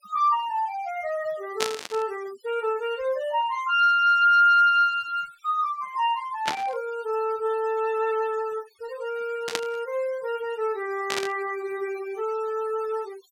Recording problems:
denoising artefacts; signal-to-artefact ratio 23 dB
burst of static; 4 times, first at 1.5 s; peak +2 dB vs average level

